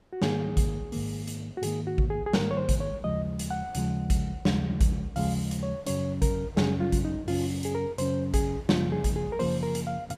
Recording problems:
wind noise; below 820 Hz, SNR 26 dB

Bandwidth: 15.5 kHz